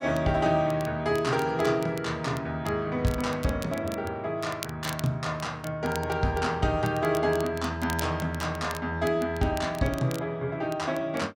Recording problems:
crackle; vinyl, SNR 17 dB

